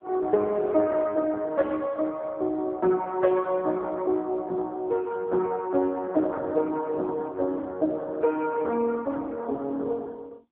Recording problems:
telephone audio; 240 Hz to 2.8 kHz, AMR-NB

